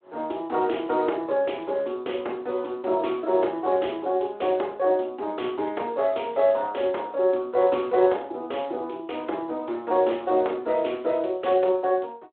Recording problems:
telephone audio; 300 Hz to 3.6 kHz, Speex

